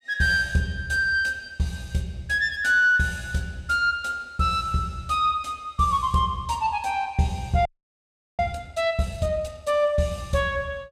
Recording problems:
audio freezing; at 7.5 s for 0.5 s

